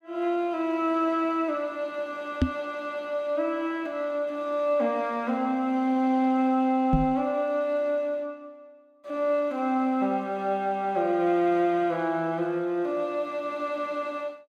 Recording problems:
microphone thump; at 2.5 s and at 7 s; peak +7 dB vs average level

